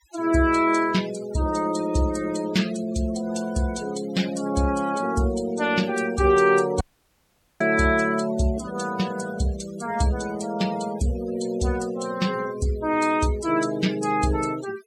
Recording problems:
denoising artefacts; signal-to-artefact ratio 15 dB
dropout; at 7 s for 1 s

